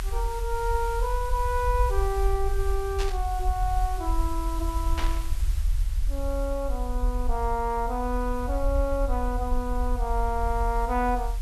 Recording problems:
hiss; slope 0 dB per octave, SNR 16 dB
low-frequency rumble; below 54 Hz, strongest tone 42 Hz, SNR 1 dB
burst of static; at 3 s and at 5 s; peak -1 dB vs average level

